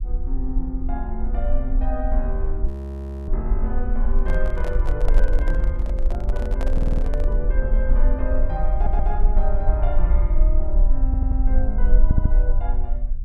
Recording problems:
rumble; below 44 Hz, strongest tone 20 Hz, SNR -8 dB
audio freezing; at 2.5 s for 0.5 s
microphone handling noise; from 4 to 7.5 s; peak +2 dB vs average level
audio stuttering; 4 times, first at 6.5 s

